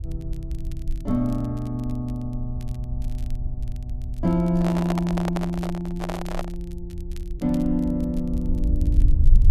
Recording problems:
low-frequency rumble; below 62 Hz, SNR 3 dB
crackle; vinyl, SNR 27 dB
handling noise; from 4.5 to 6.5 s; peak +2 dB vs average level

